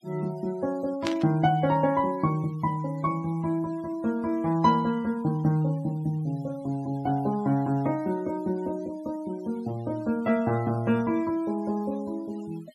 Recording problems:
denoising artefacts; signal-to-artefact ratio 24 dB
burst of static; at 1 s; peak 0 dB vs average level

